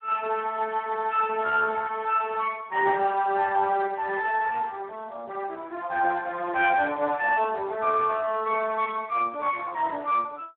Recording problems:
phone line; 240 Hz to 3.1 kHz, Speex

